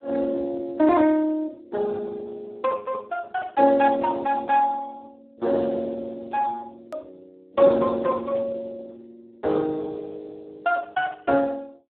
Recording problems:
phone line; 240 Hz to 2.8 kHz, Speex
click at an edit; at 7 s

